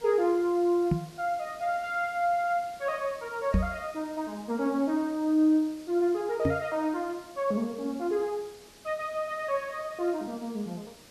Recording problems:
hiss; SNR 22 dB
microphone bump; at 1 s, at 3.5 s and at 6.5 s; peak +7 dB vs average level

